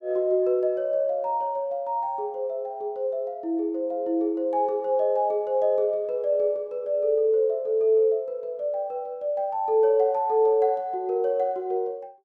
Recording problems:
none

